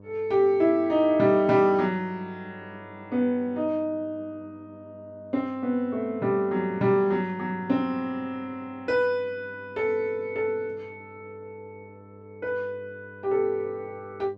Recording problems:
hum; 50 Hz, harmonics up to 1.1 kHz, SNR 23 dB

